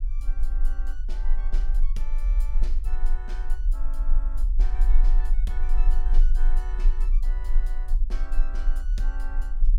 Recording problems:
low-frequency rumble; below 34 Hz, strongest tone 20 Hz, SNR -18 dB

